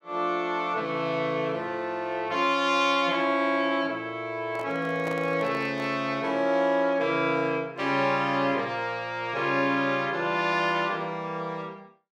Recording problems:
microphone handling noise; from 4.5 to 6 s; peak -7 dB vs average level

